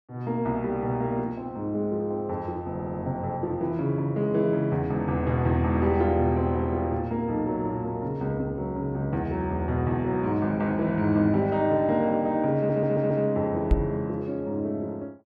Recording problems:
stutter; at 2.5 s and at 13 s
microphone bump; at 14 s; peak +7 dB vs average level

